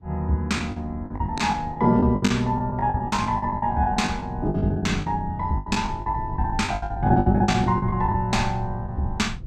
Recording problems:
rumble; below 120 Hz, SNR 12 dB
lost packets; 17% of the sound replaced, filled with the last packet

